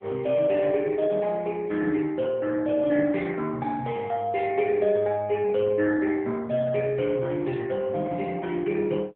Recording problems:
phone line; 220 Hz to 3.5 kHz, AMR-NB

